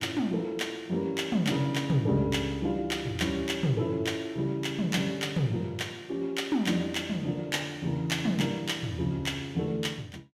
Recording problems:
none

